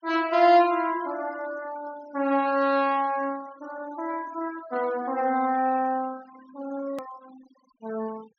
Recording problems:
low-pass filter; nothing above 6.6 kHz
noise reduction artefacts; signal-to-artefact ratio 21 dB
edit click; at 7 s

